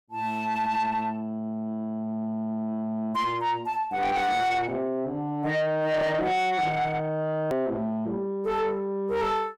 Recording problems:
distortion; soft clipping, signal-to-distortion ratio 7 dB
click at an edit; at 7.5 s

